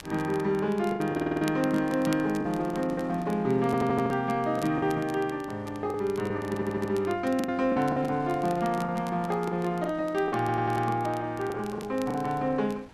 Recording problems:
wind on the microphone; below 1.3 kHz, SNR 25 dB
crackling; vinyl, SNR 22 dB
lost packets; 9% of the sound replaced, filled with the last packet
stutter; 4 times, first at 1 s

